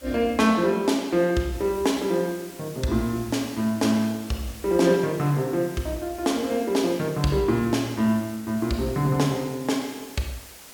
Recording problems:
hiss; slope -1 dB per octave, SNR 19 dB

